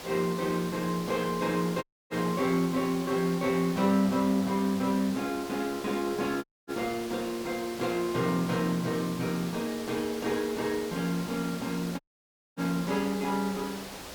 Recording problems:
hiss; slope -3 dB per octave, SNR 12 dB
audio cutting out; at 2 s, at 6.5 s and at 12 s for 0.5 s

